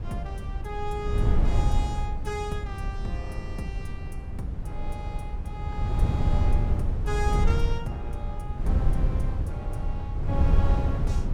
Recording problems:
wind on the microphone; below 94 Hz, SNR -8 dB

